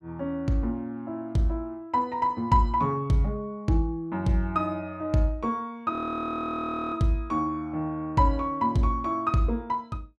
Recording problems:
audio freezing; at 6 s for 1 s

